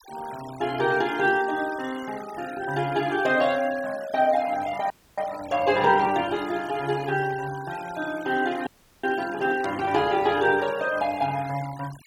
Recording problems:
noise reduction artefacts; signal-to-artefact ratio 18 dB
frozen audio; at 5 s and at 8.5 s
static burst; at 9.5 s; peak -14 dB vs average level

